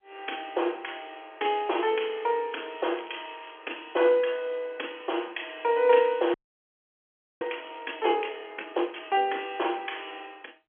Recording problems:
phone line; 280 Hz to 3.3 kHz, G.711
crackling; from 2.5 to 3.5 s and from 6.5 to 8 s; loose cable, SNR 24 dB
frozen audio; at 6.5 s for 1 s

